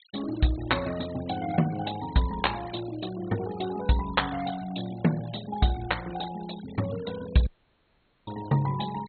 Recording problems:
low-pass filter; nothing above 4.3 kHz
denoising artefacts; signal-to-artefact ratio 17 dB
audio cutting out; at 7.5 s for 1 s

